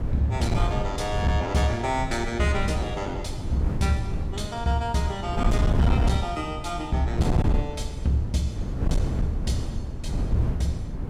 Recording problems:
distorted audio; hard clipping, signal-to-distortion ratio 12 dB
wind noise; below 150 Hz, SNR 2 dB

